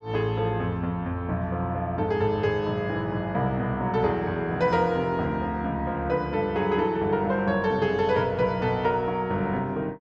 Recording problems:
none

